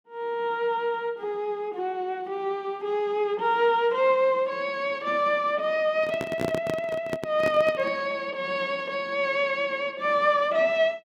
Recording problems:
microphone handling noise; from 6 to 8 s; peak 0 dB vs average level

